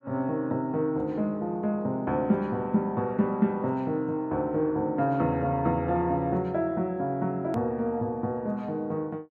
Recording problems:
edit click; at 7.5 s

